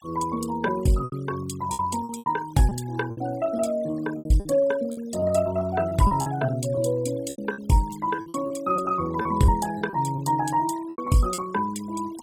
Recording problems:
denoising artefacts; signal-to-artefact ratio 19 dB
packet loss; 11% of the sound replaced, filled with repeated pitch periods

